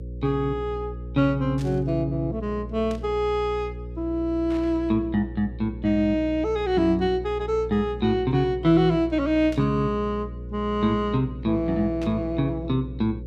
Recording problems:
hum; 60 Hz, harmonics up to 540 Hz, SNR 12 dB
static burst; 5 times, first at 1.5 s; peak -13 dB vs average level

